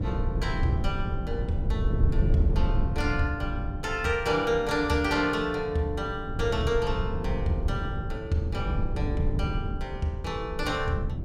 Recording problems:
rumble; below 120 Hz, SNR 2 dB

